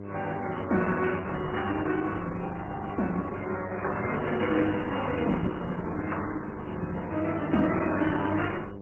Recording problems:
lossy codec; MP3, then Opus, log-spectral distance 5 dB, nothing above 2.8 kHz
electrical hum; 50 Hz, harmonics up to 1.1 kHz, SNR 12 dB

